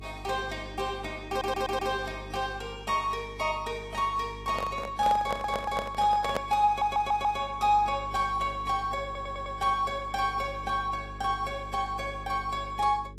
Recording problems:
lossy codec; AAC, log-spectral distance 2 dB
hum; 50 Hz, harmonics up to 450 Hz, SNR 16 dB
stutter; 4 times, first at 1.5 s
handling noise; from 4.5 to 6.5 s; peak +3 dB vs average level

